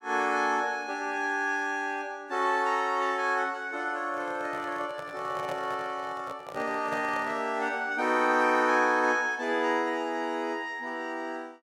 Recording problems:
handling noise; from 4 to 7.5 s; peak -5 dB vs average level

